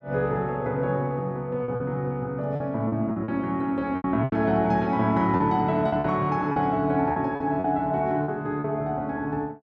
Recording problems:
lost packets; 8% of the sound replaced, filled with repeated pitch periods

